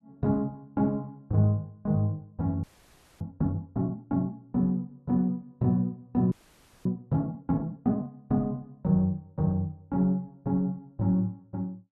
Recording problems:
audio freezing; at 2.5 s for 0.5 s and at 6.5 s for 0.5 s

